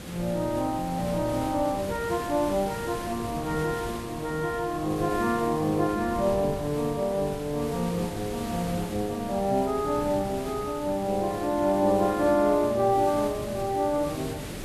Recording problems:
background hiss; SNR 12 dB
wind on the microphone; below 360 Hz, SNR 17 dB

